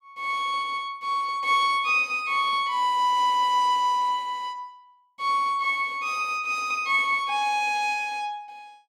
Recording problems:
none

